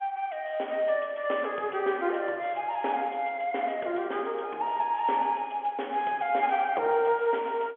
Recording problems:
telephone audio; 300 Hz to 3.4 kHz, G.711

